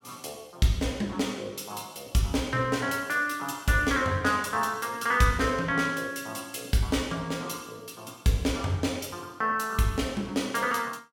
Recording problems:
none

